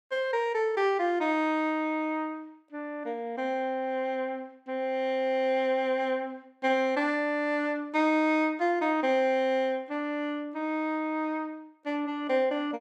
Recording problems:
none

